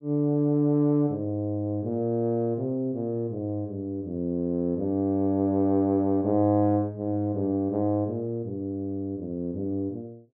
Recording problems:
none

